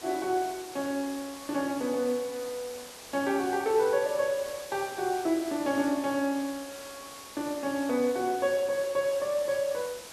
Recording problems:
hiss; slope -2 dB per octave, SNR 14 dB

